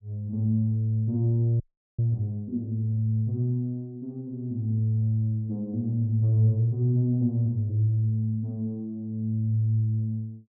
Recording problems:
audio freezing; at 1.5 s

